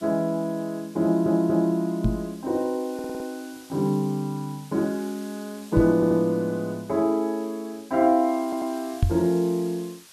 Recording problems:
hiss; slope +2 dB per octave, SNR 23 dB
audio stuttering; 4 times, first at 1 s
microphone bump; at 2 s, at 6 s and at 9 s; peak +7 dB vs average level

